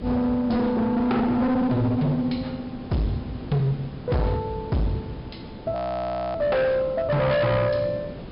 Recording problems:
treble cut off; nothing above 5.5 kHz
distortion; hard clipping, signal-to-distortion ratio 6 dB
background hiss; slope -7 dB per octave, SNR 14 dB
frozen audio; at 6 s for 0.5 s

